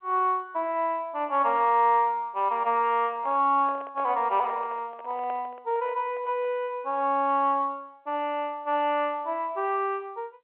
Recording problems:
phone line; 320 Hz to 3.3 kHz, G.711
handling noise; from 3 to 6.5 s; peak -12 dB vs average level

